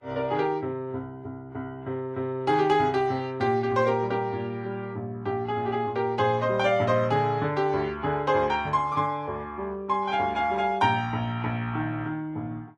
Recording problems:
lossy compression; Vorbis, log-spectral distance 2 dB

